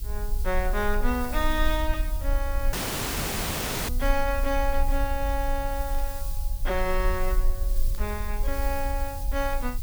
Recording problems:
hiss; SNR 10 dB
low-frequency rumble; below 46 Hz, strongest tone 22 Hz, SNR 1 dB
audio cutting out; at 2.5 s for 1 s
burst of static; at 4 s, at 6 s and at 8 s; peak -14 dB vs average level

